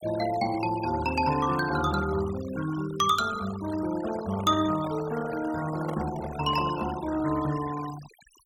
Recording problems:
noise reduction artefacts; signal-to-artefact ratio 14 dB
microphone handling noise; from 4 to 7 s; peak -3 dB vs average level

